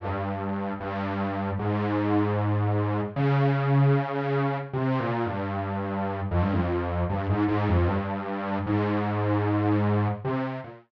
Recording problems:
none

